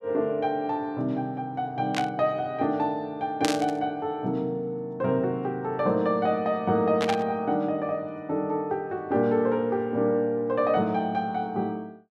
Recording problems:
static burst; at 2 s, at 3.5 s and at 7 s; peak +2 dB vs average level

